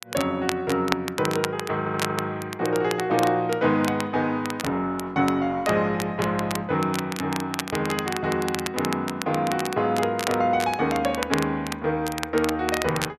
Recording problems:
crackling; vinyl, SNR 9 dB
stutter; at 2 s

